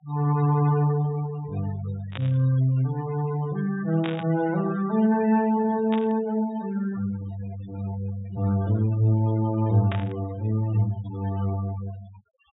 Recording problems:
treble cut off; nothing above 4 kHz
denoising artefacts; signal-to-artefact ratio 19 dB
burst of static; 4 times, first at 2 s; peak -5 dB vs average level

